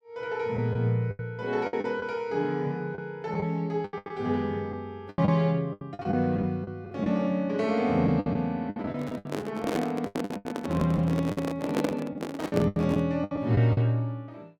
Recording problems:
packet loss; 12% of the sound replaced, filled with the last packet
microphone handling noise; from 9 to 13 s; peak +3 dB vs average level

